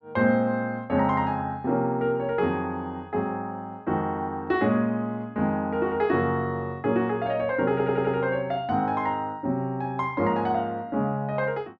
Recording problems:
audio stuttering; at 7.5 s

